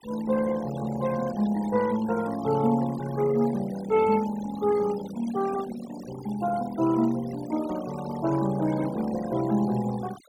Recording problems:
denoising artefacts; signal-to-artefact ratio 16 dB

